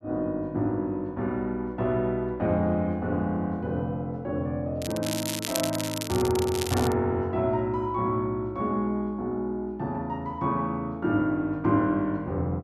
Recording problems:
crackle; from 5 to 7 s; loose cable, SNR 6 dB

